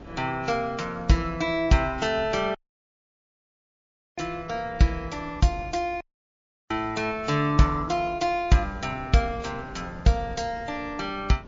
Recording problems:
lossy compression; MP3, log-spectral distance 2 dB
wind noise; below 460 Hz, SNR 20 dB
audio cutting out; at 2.5 s for 1.5 s and at 6 s for 0.5 s

